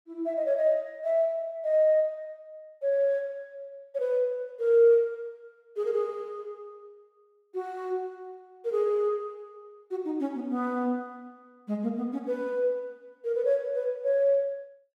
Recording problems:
none

